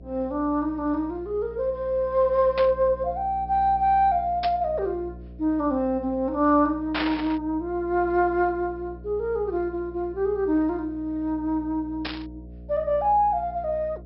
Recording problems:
treble missing; nothing above 5.4 kHz
hum; 60 Hz, harmonics up to 660 Hz, SNR 18 dB
burst of static; 4 times, first at 2.5 s; peak 0 dB vs average level

